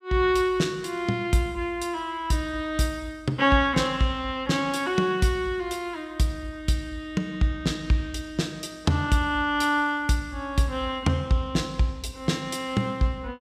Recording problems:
none

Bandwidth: 15.5 kHz